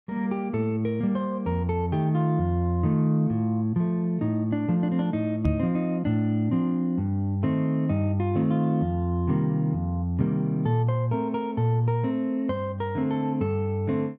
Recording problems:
knock on the microphone; at 5.5 s; peak +4 dB vs average level

